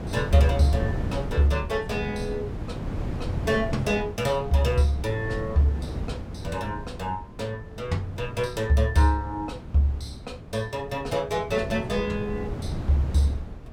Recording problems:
wind noise; below 240 Hz, SNR 8 dB

